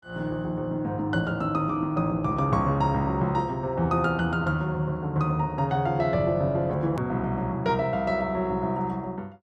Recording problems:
edit click; at 7 s

